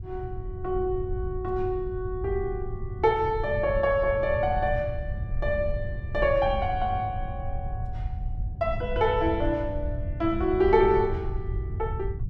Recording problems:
low-frequency rumble; below 100 Hz, SNR 7 dB

